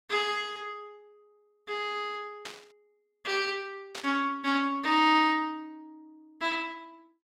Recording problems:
static burst; at 2.5 s and at 4 s; peak -6 dB vs average level

